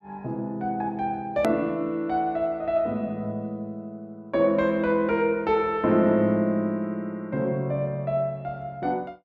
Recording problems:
click at an edit; at 1.5 s

